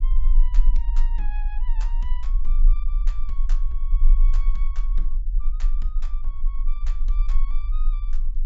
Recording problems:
treble cut off; nothing above 8 kHz
low-frequency rumble; below 32 Hz, strongest tone 24 Hz, SNR -19 dB

